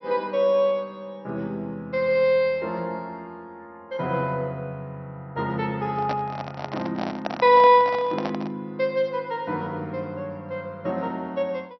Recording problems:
treble cut off; nothing above 5.8 kHz
microphone handling noise; from 6 to 8.5 s; peak 0 dB vs average level

